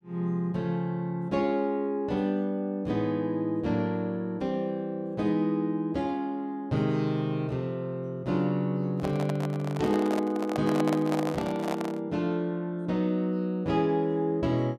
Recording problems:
handling noise; from 9 to 12 s; peak 0 dB vs average level

